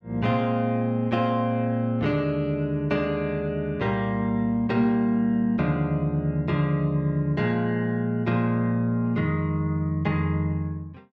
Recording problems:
none

